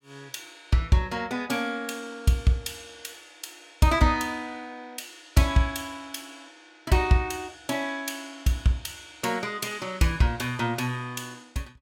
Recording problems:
none

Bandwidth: 17 kHz